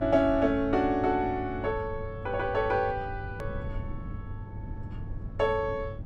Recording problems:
hum; 50 Hz, harmonics up to 500 Hz, SNR 16 dB
rumble; below 130 Hz, SNR 13 dB
edit click; at 3.5 s

